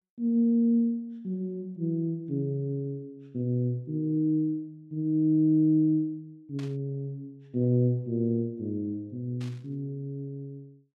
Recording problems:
burst of static; at 6.5 s and at 9.5 s; peak -15 dB vs average level

